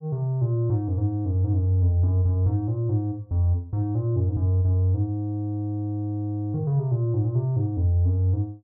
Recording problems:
none

